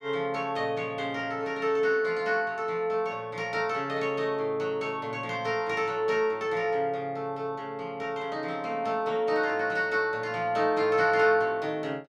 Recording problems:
none

